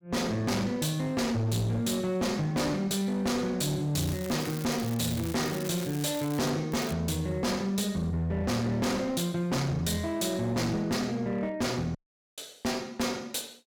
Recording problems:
distorted audio; hard clipping, uneven, signal-to-distortion ratio 6 dB
crackling; from 4 to 6.5 s and at 6.5 s; loose cable, SNR 12 dB
audio cutting out; at 12 s

